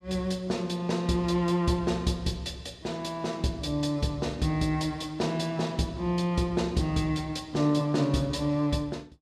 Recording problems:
none

